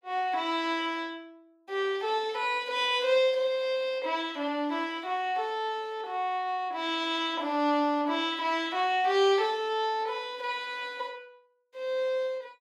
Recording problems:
none

